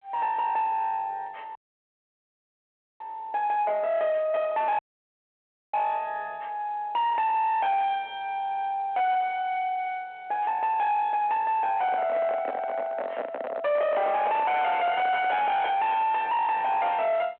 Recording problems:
phone line; 280 Hz to 3.4 kHz, G.726
distorted audio; soft clipping, signal-to-distortion ratio 5 dB
dropout; at 1.5 s for 1.5 s and at 5 s for 1 s
microphone handling noise; from 12 to 15 s; peak +1 dB vs average level

